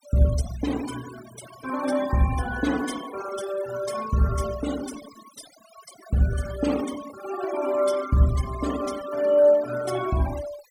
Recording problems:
denoising artefacts; signal-to-artefact ratio 14 dB

